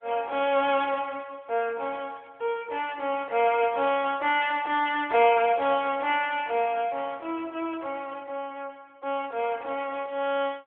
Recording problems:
telephone audio; 300 Hz to 3.5 kHz, AMR-NB

